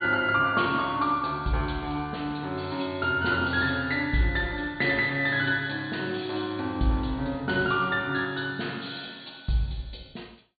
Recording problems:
treble cut off; nothing above 4.5 kHz

